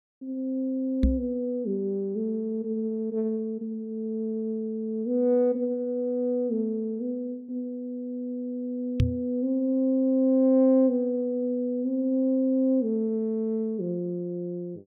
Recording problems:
knock on the microphone; at 1 s and at 9 s; peak +7 dB vs average level

